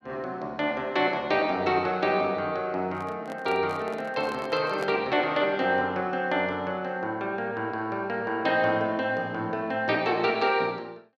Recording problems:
handling noise; from 3 to 5 s; peak -4 dB vs average level

